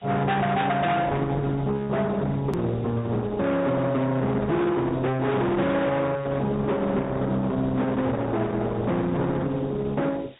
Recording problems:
treble missing; nothing above 3.8 kHz
codec artefacts; Opus, log-spectral distance 5 dB
distortion; hard clipping, uneven, signal-to-distortion ratio 5 dB
background hiss; SNR 28 dB
hard cut with a click; at 2.5 s

